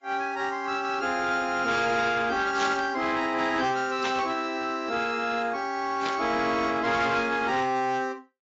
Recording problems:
codec artefacts; AAC, log-spectral distance 3 dB
distorted audio; soft clipping, signal-to-distortion ratio 11 dB
static burst; at 2.5 s, at 4 s and at 6 s; peak -2 dB vs average level

